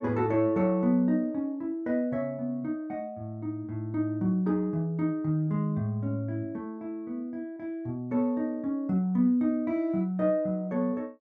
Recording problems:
none

